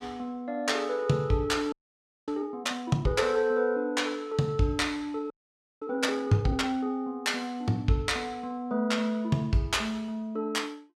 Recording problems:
audio freezing; at 1.5 s for 0.5 s and at 5.5 s for 0.5 s

